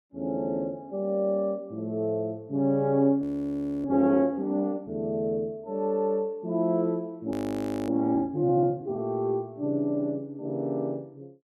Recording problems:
audio freezing; at 3 s for 0.5 s and at 7.5 s for 0.5 s

